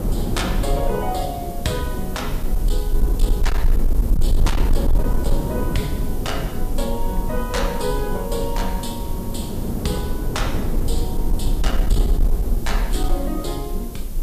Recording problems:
codec artefacts; Vorbis, log-spectral distance 3 dB, nothing above 14.7 kHz
distorted audio; hard clipping, uneven, signal-to-distortion ratio 12 dB
background hiss; SNR 12 dB
low-frequency rumble; below 42 Hz, strongest tone 22 Hz, SNR -2 dB
wind noise; below 330 Hz, SNR 1 dB

